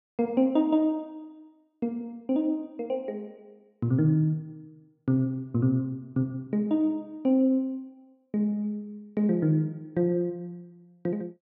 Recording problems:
none

